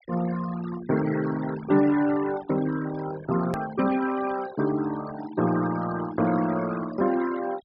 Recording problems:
low-pass filter; nothing above 5.2 kHz
denoising artefacts; signal-to-artefact ratio 13 dB
click at an edit; at 3.5 s

